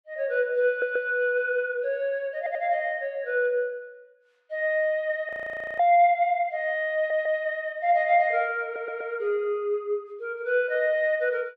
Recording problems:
stutter; 4 times, first at 0.5 s
frozen audio; at 5.5 s for 0.5 s

